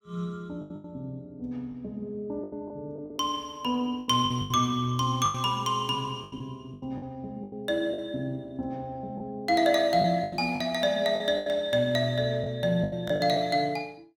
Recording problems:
lost packets; 10% of the sound replaced, filled with the last packet

